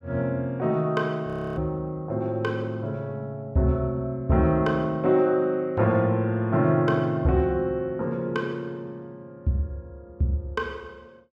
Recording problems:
audio freezing; at 1.5 s

